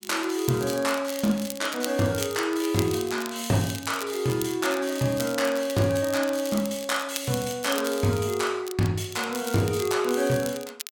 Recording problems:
crackle; vinyl, SNR 12 dB

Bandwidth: 17 kHz